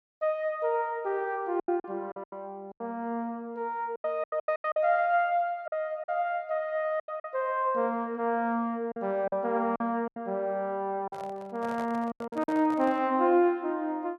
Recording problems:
lost packets; 9% of the sound replaced, filled with silence
handling noise; from 11 to 13 s; peak -8 dB vs average level

